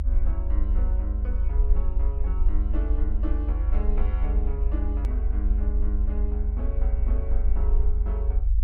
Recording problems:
rumble; below 50 Hz, SNR -12 dB
hard cut with a click; at 5 s

